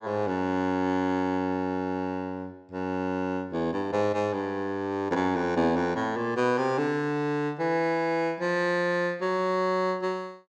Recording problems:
none

